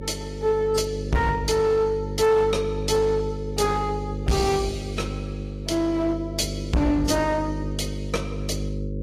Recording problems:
lossy codec; AAC, log-spectral distance 2 dB
distorted audio; hard clipping, uneven, signal-to-distortion ratio 10 dB
hum; 50 Hz, harmonics up to 550 Hz, SNR 7 dB

